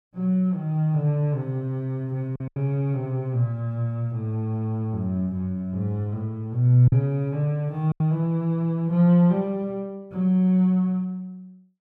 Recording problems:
packet loss; 2% of the sound replaced, filled with silence

